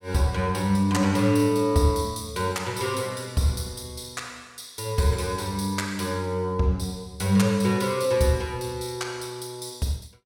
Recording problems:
none

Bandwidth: 17 kHz